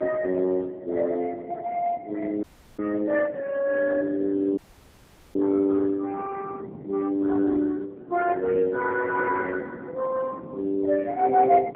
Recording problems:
phone line; 220 Hz to 2 kHz, AMR-NB
wind on the microphone; below 400 Hz, SNR 18 dB
audio cutting out; at 2.5 s and at 4.5 s for 1 s

